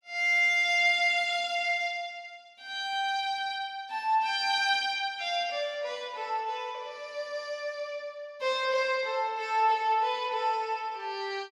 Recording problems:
none

